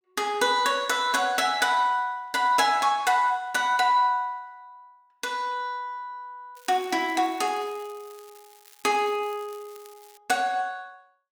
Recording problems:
crackle; from 6.5 to 10 s; loose cable, SNR 27 dB

